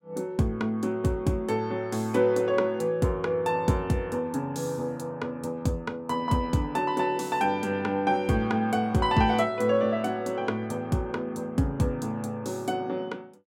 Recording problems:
none

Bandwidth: 16 kHz